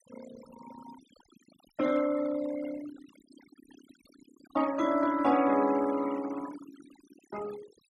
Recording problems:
noise reduction artefacts; signal-to-artefact ratio 18 dB

